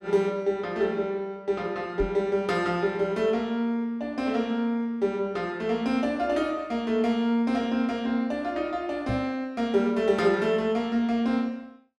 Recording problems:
knock on the microphone; at 2 s and at 9 s; peak -1 dB vs average level

